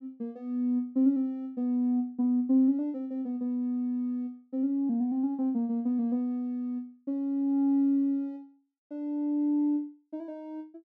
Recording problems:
none

